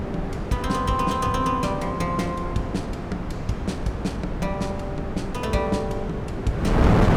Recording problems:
wind on the microphone; below 450 Hz, SNR 1 dB

